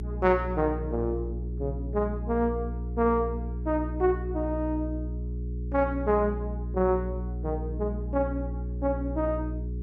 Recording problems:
hum; 60 Hz, harmonics up to 420 Hz, SNR 4 dB

